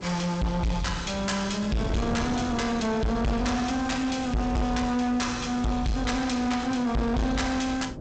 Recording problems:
codec artefacts; G.722, log-spectral distance 4 dB, nothing above 7.8 kHz
distortion; soft clipping, signal-to-distortion ratio 7 dB
wind on the microphone; below 400 Hz, SNR 11 dB

